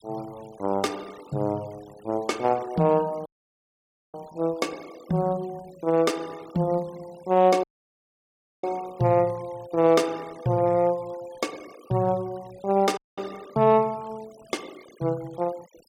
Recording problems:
noise reduction artefacts; signal-to-artefact ratio 24 dB
dropout; at 3.5 s for 1 s, at 7.5 s for 1 s and at 13 s

